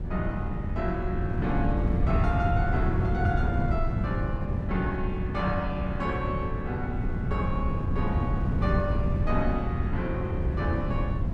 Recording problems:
wind noise; below 150 Hz, SNR -3 dB

